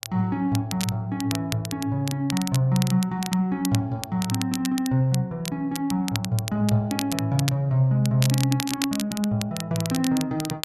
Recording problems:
crackle; vinyl, SNR 9 dB

